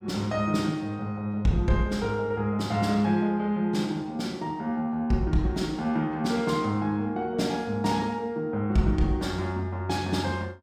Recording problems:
none

